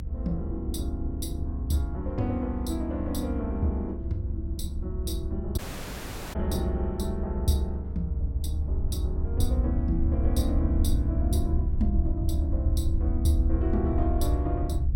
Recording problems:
hum; 50 Hz, harmonics up to 850 Hz, SNR 23 dB
rumble; below 74 Hz, SNR -3 dB
audio cutting out; at 5.5 s for 1 s

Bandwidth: 16.5 kHz